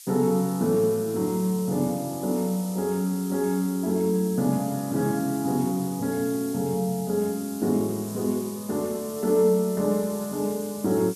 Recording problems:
hiss; slope +8 dB per octave, SNR 14 dB

